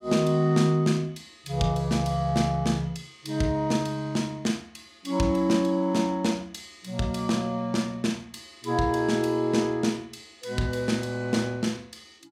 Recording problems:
none

